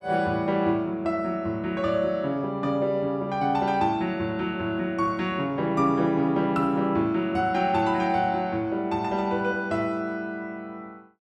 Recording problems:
none

